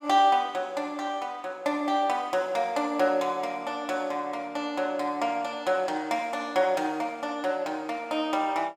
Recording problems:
none

